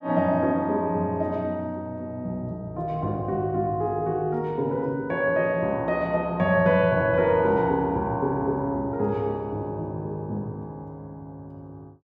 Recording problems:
none

